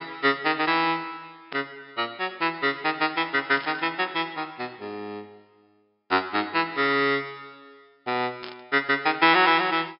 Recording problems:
low-pass filter; nothing above 5.3 kHz
static burst; at 1.5 s, at 3.5 s and at 8.5 s; peak -8 dB vs average level

